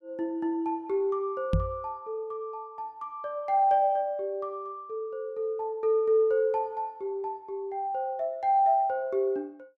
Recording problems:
microphone thump; at 1.5 s; peak +6 dB vs average level

